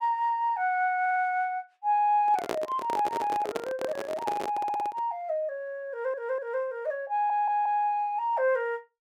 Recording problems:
audio stuttering; 4 times, first at 1 s
microphone handling noise; from 2 to 5 s; peak +2 dB vs average level

